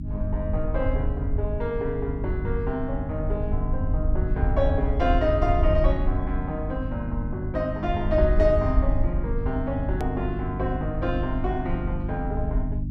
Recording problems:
electrical hum; 50 Hz, harmonics up to 300 Hz, SNR 5 dB
rumble; below 76 Hz, SNR 1 dB
click at an edit; at 10 s

